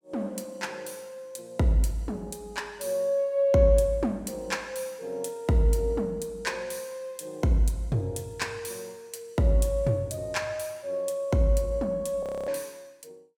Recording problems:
audio freezing; at 12 s

